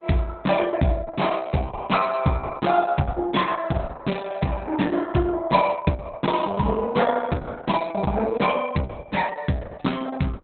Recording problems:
lossy codec; Opus, log-spectral distance 5 dB, nothing above 4 kHz

